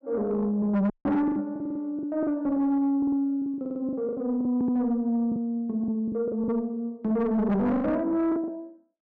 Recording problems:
distorted audio; soft clipping, signal-to-distortion ratio 8 dB
lost packets; 11% of the sound replaced, filled with the last packet
audio cutting out; at 1 s
stutter; 4 times, first at 1.5 s

